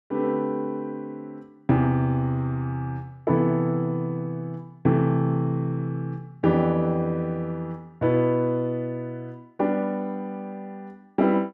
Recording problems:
none

